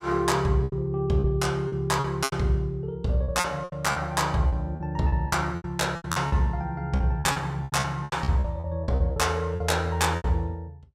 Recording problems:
packet loss; 14% of the sound replaced, filled with repeated pitch periods

